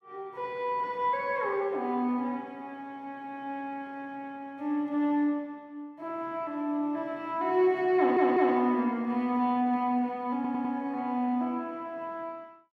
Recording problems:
stutter; at 8 s and at 10 s

